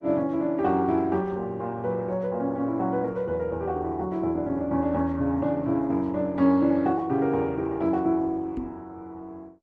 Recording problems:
lossy codec; Opus, log-spectral distance 2 dB
microphone thump; at 8.5 s; peak -2 dB vs average level

